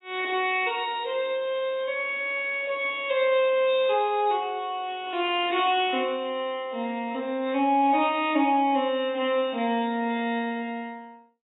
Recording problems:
codec artefacts; AAC, log-spectral distance 2 dB, nothing above 3.2 kHz

